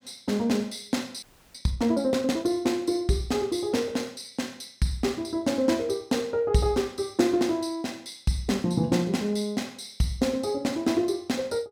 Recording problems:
frozen audio; at 1 s

